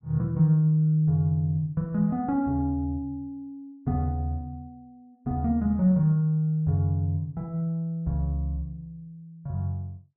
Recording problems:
none

